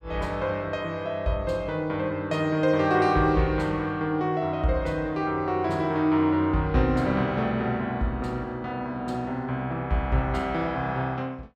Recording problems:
none

